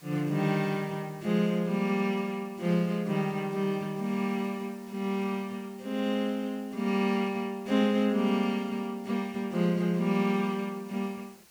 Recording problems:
background hiss; slope -1 dB per octave, SNR 26 dB

